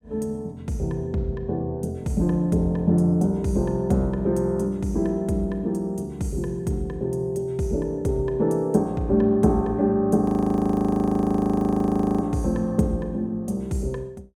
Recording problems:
frozen audio; at 10 s for 2 s

